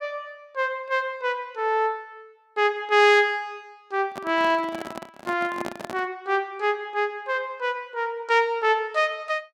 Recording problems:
handling noise; from 4 to 6 s; peak -4 dB vs average level

